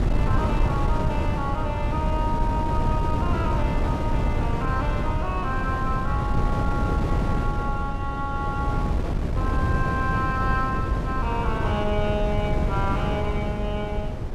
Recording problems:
wind on the microphone; below 200 Hz, SNR -3 dB

